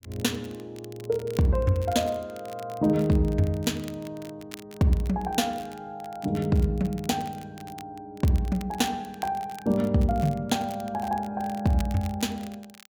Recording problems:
crackling; vinyl, SNR 22 dB

